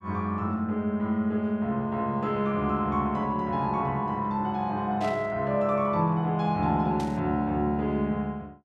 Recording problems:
burst of static; at 5 s and at 7 s; peak -11 dB vs average level

